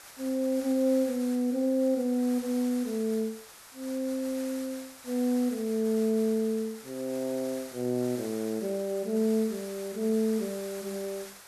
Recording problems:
background hiss; SNR 15 dB

